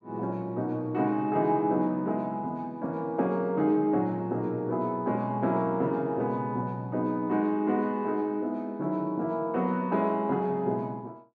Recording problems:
none

